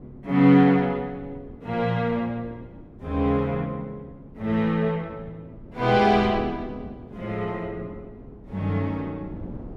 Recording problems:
wind on the microphone; below 310 Hz, SNR 19 dB

